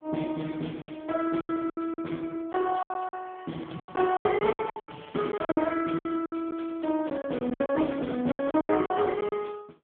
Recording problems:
telephone audio; 190 Hz to 3 kHz, AMR-NB
packet loss; 15% of the sound replaced, filled with silence

